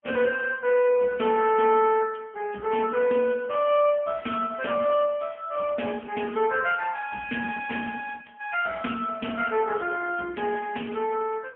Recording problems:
telephone audio; 260 Hz to 3.2 kHz, AMR-NB, then MP3

